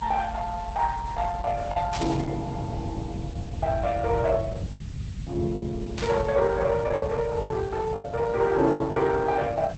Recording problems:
lossy compression; Opus, log-spectral distance 3 dB, nothing above 7.6 kHz
background hiss; slope 0 dB per octave, SNR 25 dB
rumble; below 140 Hz, SNR 9 dB
packet loss; 5% of the sound replaced, filled with the last packet
static burst; at 2 s and at 6 s; peak -5 dB vs average level

